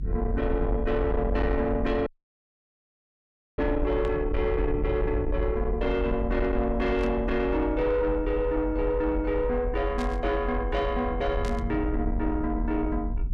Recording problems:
distortion; soft clipping, signal-to-distortion ratio 12 dB
low-frequency rumble; below 76 Hz, SNR 5 dB
dropout; at 2 s for 1.5 s
static burst; 4 times, first at 4 s; peak -10 dB vs average level

